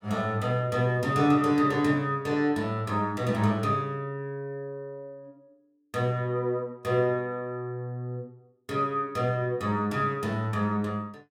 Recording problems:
none

